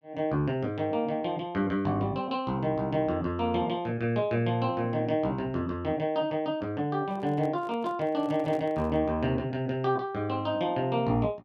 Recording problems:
microphone handling noise; from 7 to 9 s; peak -10 dB vs average level

